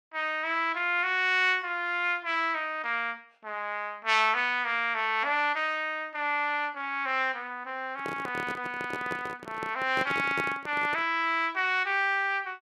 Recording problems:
microphone handling noise; from 8 to 11 s; peak -2 dB vs average level

